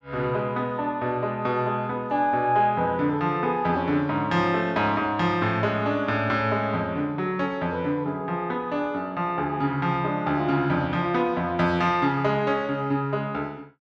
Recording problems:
none

